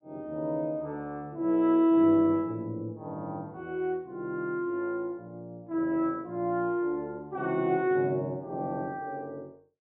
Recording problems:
treble cut off; nothing above 4 kHz

